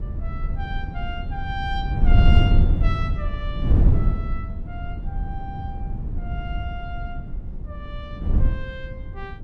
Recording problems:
wind on the microphone; below 96 Hz, SNR -11 dB

